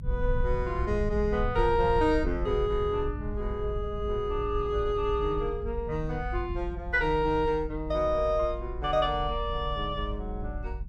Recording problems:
low-frequency rumble; below 72 Hz, SNR 7 dB

